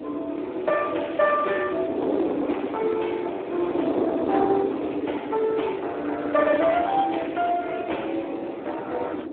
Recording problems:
telephone audio; 240 Hz to 3.5 kHz, Speex
distorted audio; soft clipping, signal-to-distortion ratio 9 dB
wind on the microphone; below 520 Hz, SNR 6 dB

